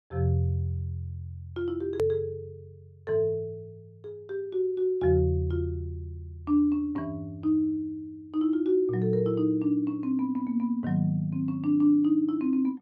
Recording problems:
hard cut with a click; at 2 s

